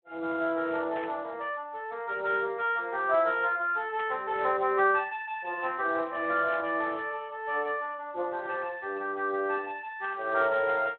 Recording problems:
phone line; 340 Hz to 3.5 kHz, Speex
static burst; 4 times, first at 1 s; peak -11 dB vs average level

